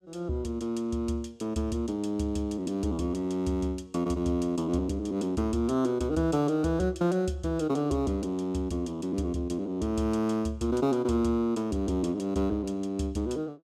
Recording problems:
none

